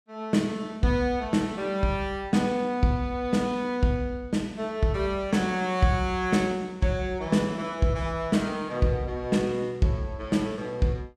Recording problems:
none

